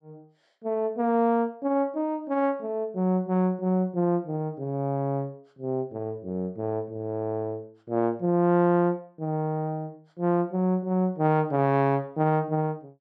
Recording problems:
none

